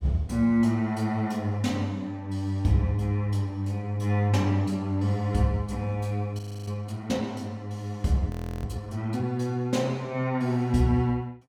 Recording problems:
frozen audio; at 6.5 s and at 8.5 s

